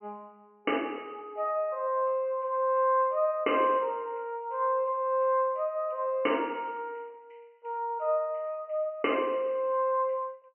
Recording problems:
treble missing; nothing above 3 kHz

